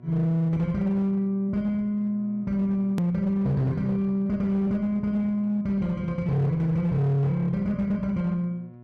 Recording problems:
distorted audio; hard clipping, uneven, signal-to-distortion ratio 11 dB
hum; 60 Hz, harmonics up to 1.1 kHz, SNR 23 dB
hard cut with a click; at 3 s

